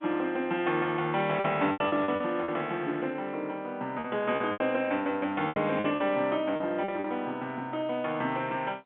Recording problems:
phone line; 190 Hz to 3.6 kHz, G.711
lost packets; 8% of the sound replaced, filled with repeated pitch periods

